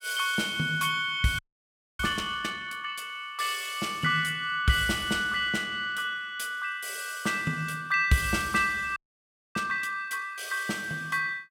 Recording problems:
audio freezing; at 1.5 s for 0.5 s and at 9 s for 0.5 s

